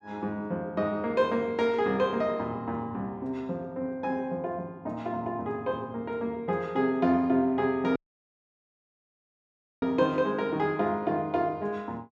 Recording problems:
dropout; at 8 s for 2 s

